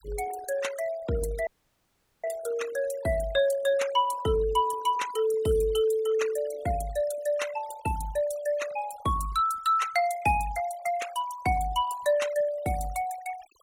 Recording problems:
denoising artefacts; signal-to-artefact ratio 16 dB
audio cutting out; at 1.5 s for 1 s

